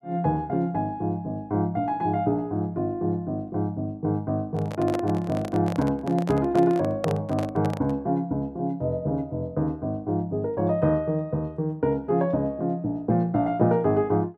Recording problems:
handling noise; from 4.5 to 8 s; peak +2 dB vs average level

